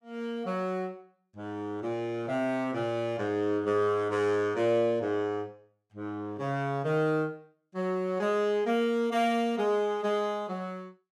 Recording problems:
none

